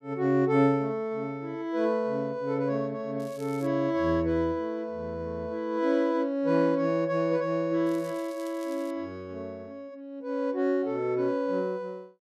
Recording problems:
crackling; at 3 s and from 8 to 9 s; loose cable, SNR 24 dB

